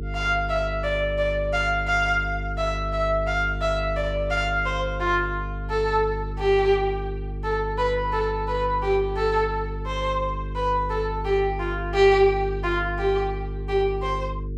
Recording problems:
hum; 50 Hz, harmonics up to 450 Hz, SNR 8 dB

